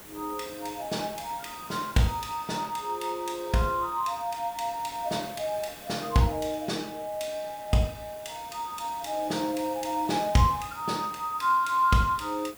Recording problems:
hiss; slope -4 dB per octave, SNR 17 dB

